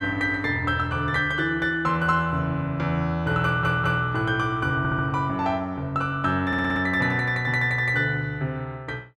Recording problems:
stutter; at 3.5 s, at 5 s and at 6.5 s

